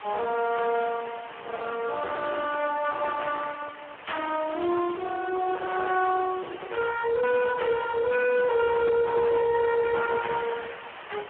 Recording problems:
phone line; 300 Hz to 3.4 kHz, Speex
distortion; soft clipping, signal-to-distortion ratio 7 dB
background hiss; SNR 16 dB

